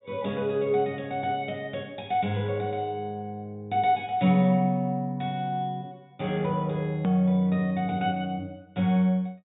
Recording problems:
treble missing; nothing above 4 kHz
hard cut with a click; at 7 s

